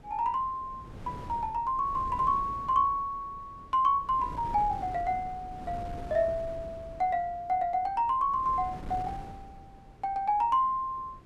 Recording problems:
wind on the microphone; below 340 Hz, SNR 17 dB

